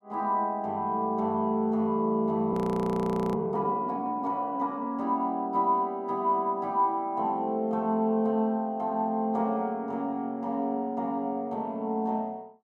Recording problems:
frozen audio; at 2.5 s for 1 s

